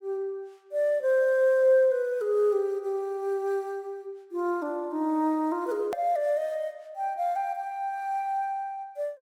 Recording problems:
hard cut with a click; at 6 s

